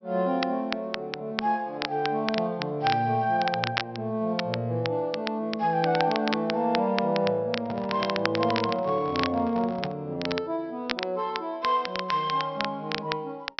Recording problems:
treble cut off; nothing above 5.7 kHz
crackle; vinyl, SNR 8 dB
microphone handling noise; from 7.5 to 10 s; peak -6 dB vs average level

